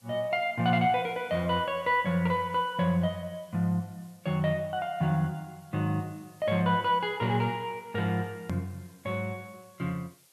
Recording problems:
background hiss; SNR 30 dB
edit click; at 8.5 s

